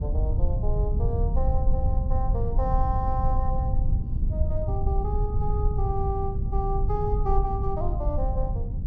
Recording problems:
low-pass filter; nothing above 6.6 kHz
rumble; below 80 Hz, SNR -5 dB

